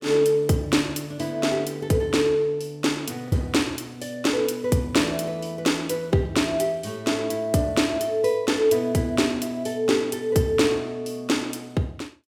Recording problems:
lost packets; 0.3% of the sound replaced, filled with the last packet

